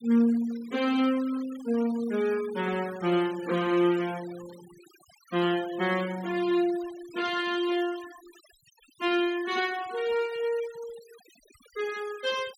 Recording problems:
denoising artefacts; signal-to-artefact ratio 19 dB

